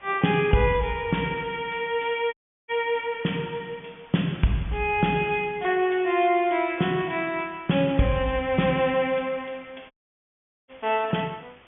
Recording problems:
treble missing; nothing above 3.4 kHz
background hiss; SNR 27 dB
audio cutting out; at 2.5 s and at 10 s for 1 s

